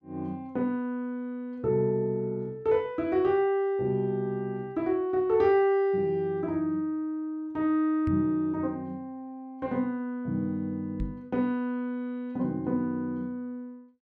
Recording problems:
microphone bump; at 8 s and at 11 s; peak -1 dB vs average level

